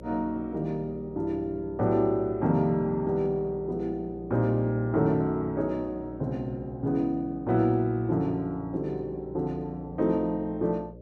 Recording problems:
electrical hum; 60 Hz, harmonics up to 600 Hz, SNR 17 dB

